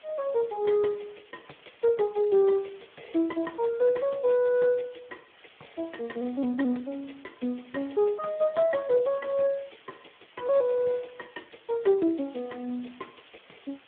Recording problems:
phone line; 190 Hz to 3 kHz, Speex
hiss; SNR 28 dB

